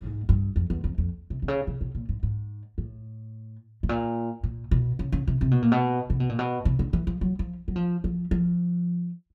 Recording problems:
none

